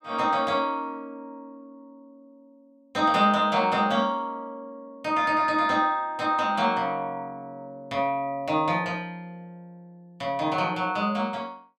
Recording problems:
none

